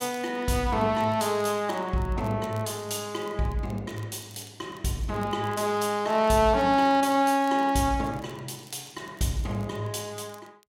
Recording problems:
crackling; vinyl, SNR 28 dB

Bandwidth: 16 kHz